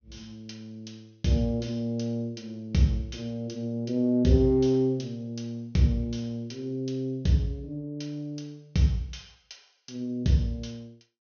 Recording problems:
treble cut off; nothing above 6.5 kHz

